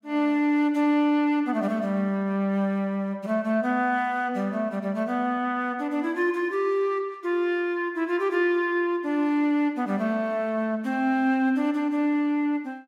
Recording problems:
none

